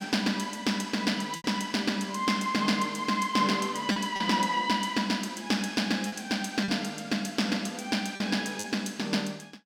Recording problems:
packet loss; 3% of the sound replaced, filled with repeated pitch periods

